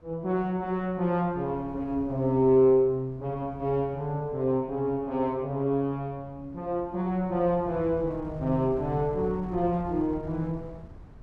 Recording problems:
wind noise; below 200 Hz, SNR 19 dB

